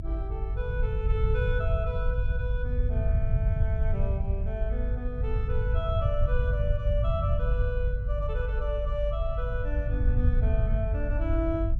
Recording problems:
low-frequency rumble; below 88 Hz, SNR -6 dB

